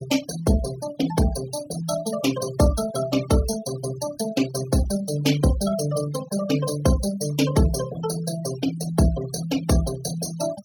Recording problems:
noise reduction artefacts; signal-to-artefact ratio 12 dB

